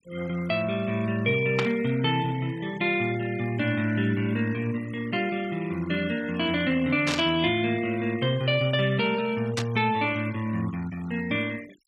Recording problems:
noise reduction artefacts; signal-to-artefact ratio 20 dB
static burst; at 1.5 s, at 7 s and at 9.5 s; peak +2 dB vs average level

